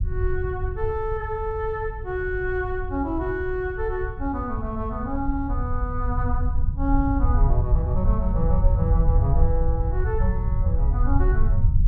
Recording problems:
rumble; below 80 Hz, SNR -3 dB

